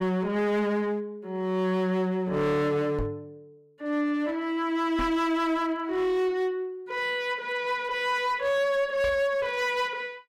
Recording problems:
distorted audio; hard clipping, uneven, signal-to-distortion ratio 10 dB
microphone bump; at 3 s, at 5 s and at 9 s; peak -2 dB vs average level

